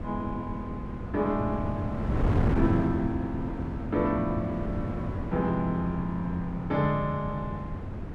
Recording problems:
wind noise; below 280 Hz, SNR 2 dB

